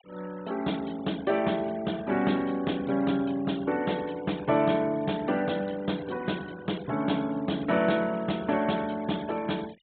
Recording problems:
treble missing; nothing above 4 kHz
denoising artefacts; signal-to-artefact ratio 21 dB

